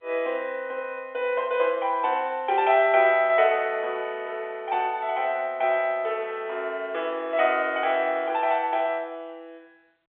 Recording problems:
telephone audio; 300 Hz to 3.6 kHz, G.711

